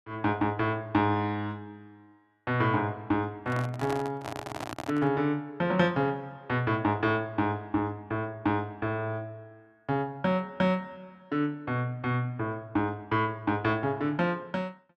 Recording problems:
handling noise; from 3.5 to 5 s; peak -3 dB vs average level

